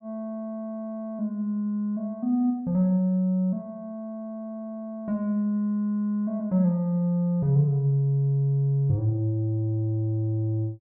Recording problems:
none

